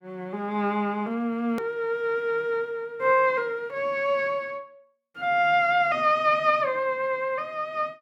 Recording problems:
hard cut with a click; at 1.5 s

